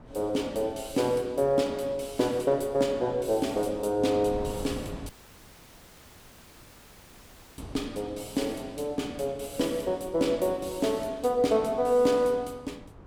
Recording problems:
wind noise; below 360 Hz, SNR 19 dB
audio cutting out; at 5 s for 2.5 s

